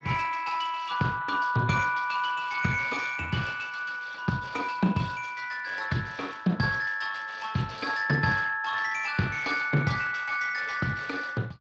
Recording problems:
codec artefacts; Speex, then Speex, log-spectral distance 5 dB

